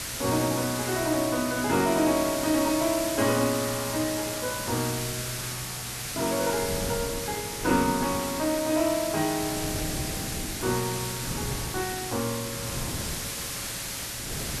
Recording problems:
hum; 60 Hz, harmonics up to 660 Hz, SNR 23 dB
background hiss; slope +1 dB per octave, SNR 4 dB
wind noise; below 320 Hz, SNR 13 dB

